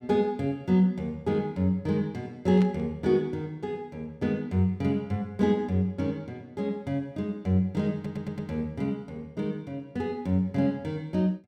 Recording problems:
static burst; at 2.5 s; peak -10 dB vs average level
stutter; at 8 s

